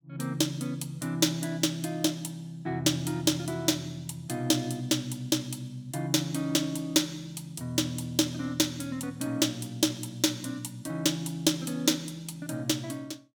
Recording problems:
none

